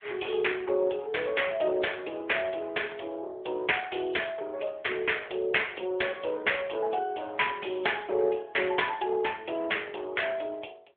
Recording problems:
telephone audio; 320 Hz to 3.5 kHz, AMR-NB

